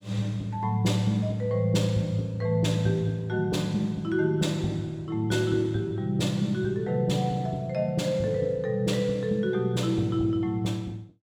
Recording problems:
none

